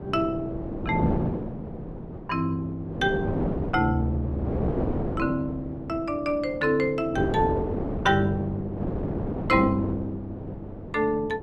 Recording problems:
wind noise; below 450 Hz, SNR 5 dB

